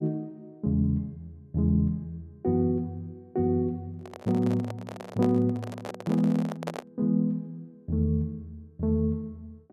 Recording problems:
handling noise; from 4 to 7 s; peak -2 dB vs average level

